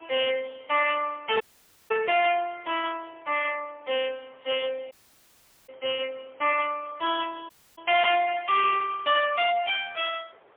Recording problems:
phone line; 370 Hz to 3.4 kHz, AMR-NB, then MP3
distorted audio; soft clipping, signal-to-distortion ratio 7 dB
background hiss; SNR 30 dB
audio cutting out; at 1.5 s, at 5 s for 1 s and at 7.5 s

